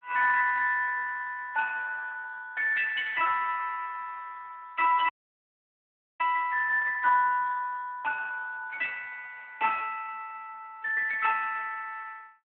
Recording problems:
telephone audio; 320 Hz to 2.5 kHz, Speex
audio freezing; at 5 s for 1 s

